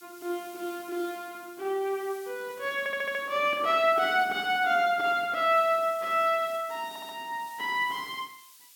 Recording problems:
background hiss; slope +5 dB per octave, SNR 22 dB
audio stuttering; at 3 s and at 7 s

